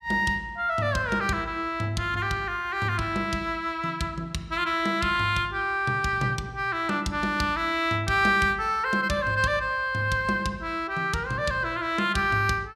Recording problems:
none

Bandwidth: 14.5 kHz